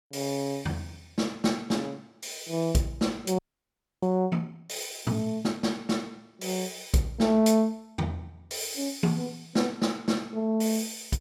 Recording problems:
audio freezing; at 3.5 s for 0.5 s

